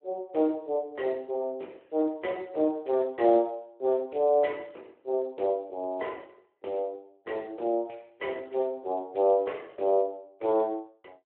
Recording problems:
telephone audio; 280 Hz to 3.1 kHz, Speex

